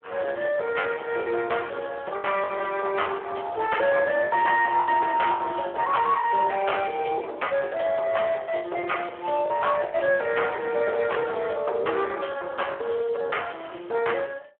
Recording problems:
telephone audio; 340 Hz to 3.2 kHz, Speex
distorted audio; soft clipping, signal-to-distortion ratio 14 dB
packet loss; 10% of the sound replaced, filled with the last packet

